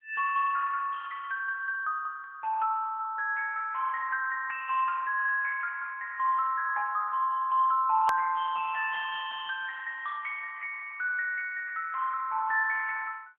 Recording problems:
phone line; 280 Hz to 3.1 kHz, AMR-NB
edit click; at 8 s

